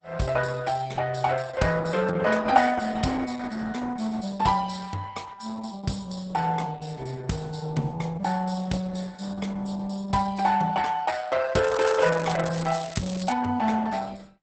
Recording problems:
codec artefacts; Opus, log-spectral distance 5 dB, nothing above 8 kHz
crackle; from 12 to 13 s; loose cable, SNR 15 dB

